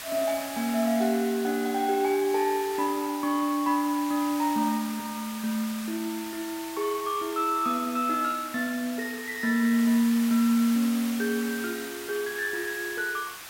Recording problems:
background hiss; SNR 11 dB

